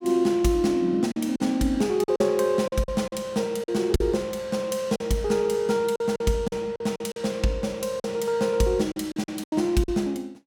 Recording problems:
packet loss; 9% of the sound replaced, filled with silence

